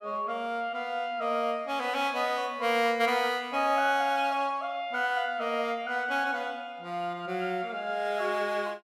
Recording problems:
none

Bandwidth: 17 kHz